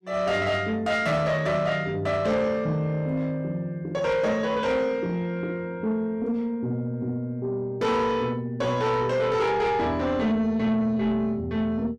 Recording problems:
distorted audio; soft clipping, signal-to-distortion ratio 11 dB

